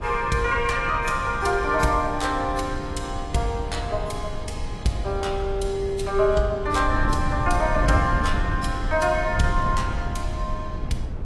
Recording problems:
lossy codec; AAC, log-spectral distance 2 dB, nothing above 11.6 kHz
wind noise; below 110 Hz, SNR 6 dB

